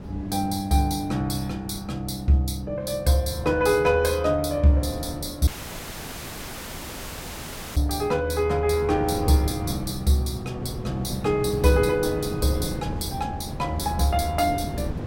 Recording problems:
wind on the microphone; below 320 Hz, SNR 12 dB
dropout; at 5.5 s for 2.5 s

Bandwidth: 16.5 kHz